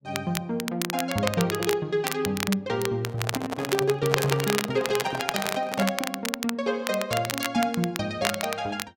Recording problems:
crackle; vinyl, SNR 5 dB
handling noise; from 3 to 6 s; peak 0 dB vs average level

